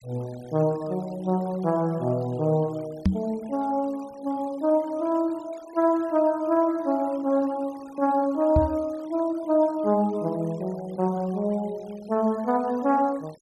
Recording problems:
denoising artefacts; signal-to-artefact ratio 25 dB
knock on the microphone; at 3 s and at 8.5 s; peak +7 dB vs average level

